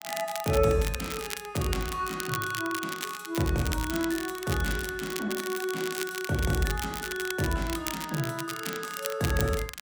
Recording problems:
crackling; vinyl, SNR 7 dB

